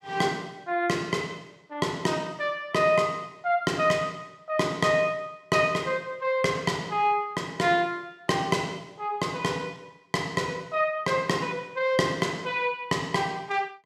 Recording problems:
none

